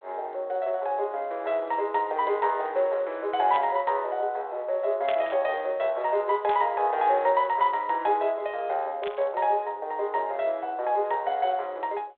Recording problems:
phone line; 370 Hz to 3.7 kHz, G.726
burst of static; 4 times, first at 3.5 s; peak -5 dB vs average level

